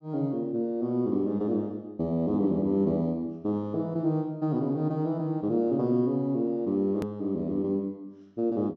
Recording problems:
treble missing; nothing above 8 kHz
hard cut with a click; at 7 s

